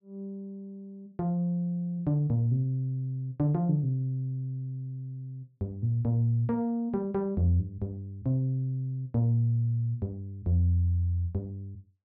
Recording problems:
treble missing; nothing above 5.5 kHz

